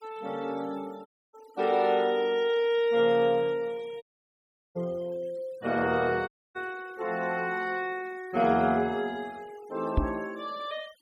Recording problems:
denoising artefacts; signal-to-artefact ratio 24 dB
audio cutting out; at 1 s, at 4 s for 0.5 s and at 6.5 s
knock on the microphone; at 10 s; peak +6 dB vs average level

